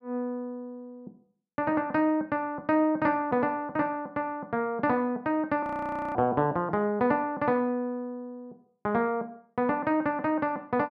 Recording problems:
audio freezing; at 5.5 s for 0.5 s

